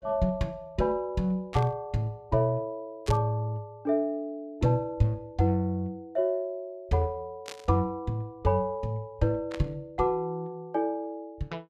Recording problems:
static burst; 4 times, first at 1.5 s; peak -6 dB vs average level

